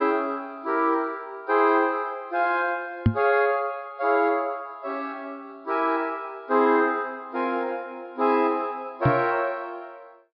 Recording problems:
treble missing; nothing above 5.5 kHz
microphone thump; at 3 s and at 9 s; peak +9 dB vs average level

